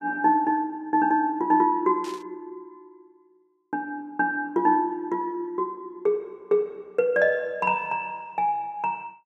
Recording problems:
static burst; at 2 s; peak -14 dB vs average level

